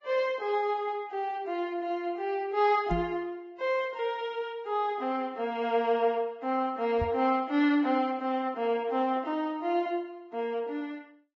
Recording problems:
codec artefacts; Vorbis, log-spectral distance 2 dB
microphone thump; at 3 s and at 7 s; peak +1 dB vs average level

